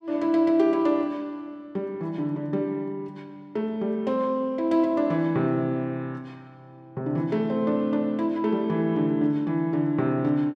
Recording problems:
none

